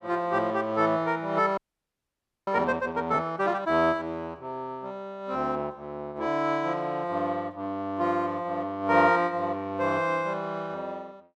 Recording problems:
audio freezing; at 1.5 s for 1 s

